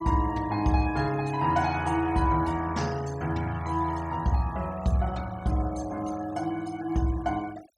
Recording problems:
denoising artefacts; signal-to-artefact ratio 20 dB

